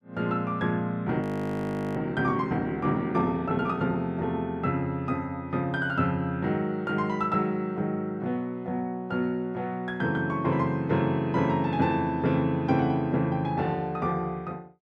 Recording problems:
audio freezing; at 1 s for 0.5 s

